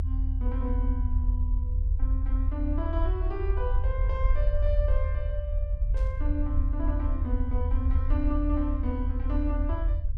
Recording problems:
low-frequency rumble; below 76 Hz, strongest tone 40 Hz, SNR -7 dB
burst of static; at 6 s; peak -15 dB vs average level

